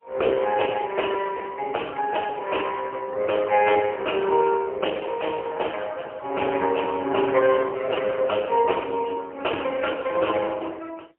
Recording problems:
telephone audio; 320 Hz to 2.5 kHz, AMR-NB, then MP3

